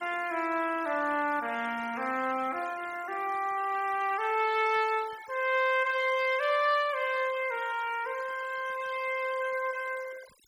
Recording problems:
denoising artefacts; signal-to-artefact ratio 18 dB

